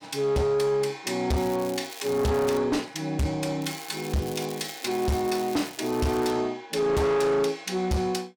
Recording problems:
distortion; soft clipping, signal-to-distortion ratio 8 dB
crackle; from 1.5 to 2.5 s and from 3.5 to 6.5 s; loose cable, SNR 15 dB

